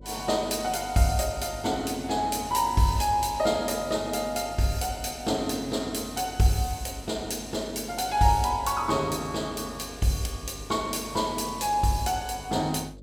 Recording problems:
mains hum; 50 Hz, harmonics up to 600 Hz, SNR 19 dB

